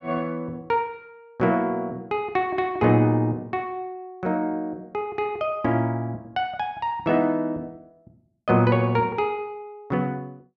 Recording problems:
none

